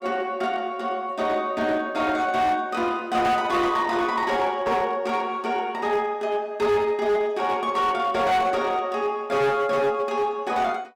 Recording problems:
distortion; hard clipping, uneven, signal-to-distortion ratio 12 dB

